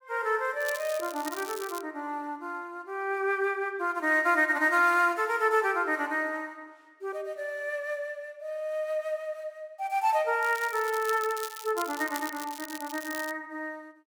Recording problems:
crackling; from 0.5 to 2 s and from 10 to 13 s; loose cable, SNR 13 dB

